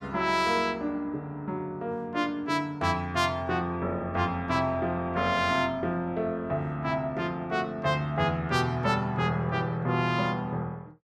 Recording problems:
none

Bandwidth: 15 kHz